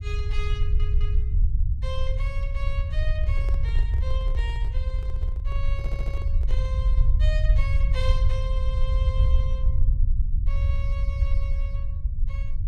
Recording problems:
low-frequency rumble; below 66 Hz, SNR -13 dB
stutter; at 0.5 s and at 6 s
microphone handling noise; from 3 to 6.5 s; peak -1 dB vs average level

